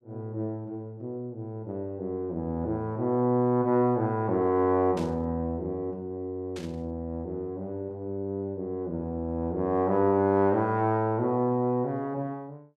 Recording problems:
burst of static; at 5 s and at 6.5 s; peak -11 dB vs average level

